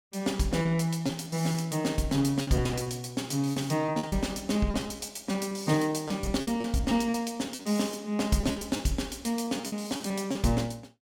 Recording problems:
packet loss; 11% of the sound replaced, filled with repeated pitch periods

